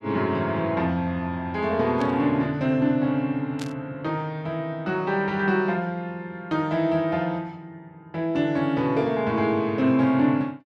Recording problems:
burst of static; at 2 s and at 3.5 s; peak -9 dB vs average level

